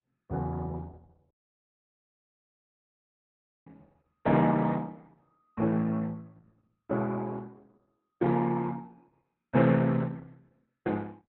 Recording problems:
lossy codec; Opus, log-spectral distance 3 dB, nothing above 3.9 kHz
audio cutting out; at 1.5 s for 2.5 s

